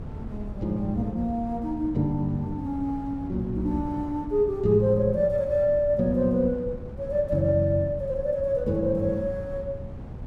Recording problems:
wind on the microphone; below 180 Hz, SNR 13 dB

